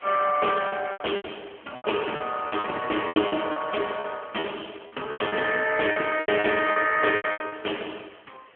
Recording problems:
telephone audio; 260 Hz to 3.2 kHz, AMR-NB
hiss; SNR 27 dB
packet loss; 14% of the sound replaced, filled with repeated pitch periods

